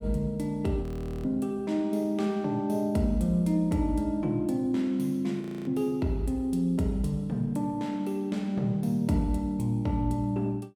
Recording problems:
audio freezing; at 1 s and at 5.5 s

